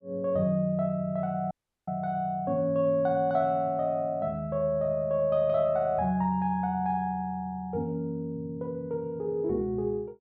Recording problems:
audio cutting out; at 1.5 s

